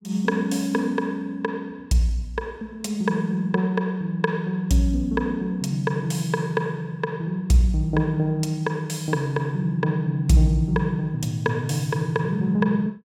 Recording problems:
none

